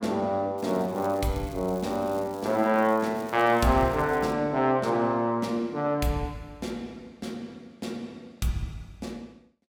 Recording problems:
crackle; from 0.5 to 4.5 s; loose cable, SNR 23 dB

